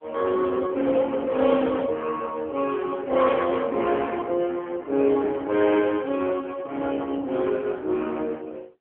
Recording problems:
phone line; 240 Hz to 2.1 kHz, AMR-NB

